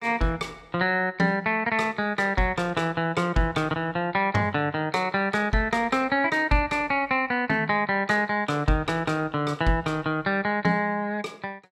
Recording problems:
none

